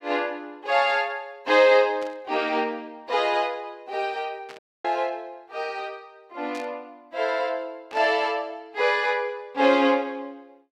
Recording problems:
static burst; 4 times, first at 2 s; peak -13 dB vs average level
dropout; at 4.5 s

